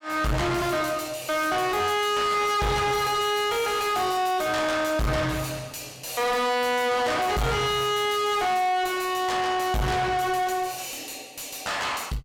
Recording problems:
distorted audio; soft clipping, signal-to-distortion ratio 5 dB

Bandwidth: 17 kHz